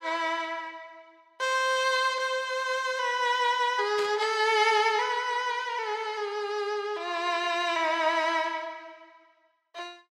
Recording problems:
static burst; at 4 s; peak -7 dB vs average level

